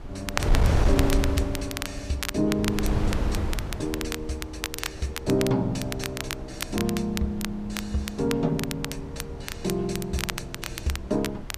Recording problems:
wind on the microphone; below 130 Hz, SNR 2 dB
crackling; vinyl, SNR 6 dB

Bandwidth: 14.5 kHz